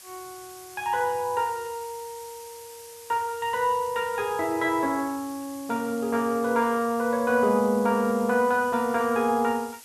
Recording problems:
hiss; slope +2 dB per octave, SNR 19 dB

